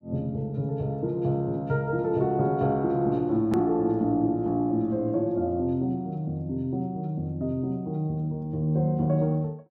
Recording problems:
edit click; at 3.5 s

